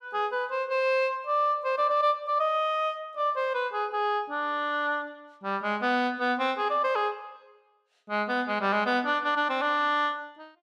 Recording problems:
none

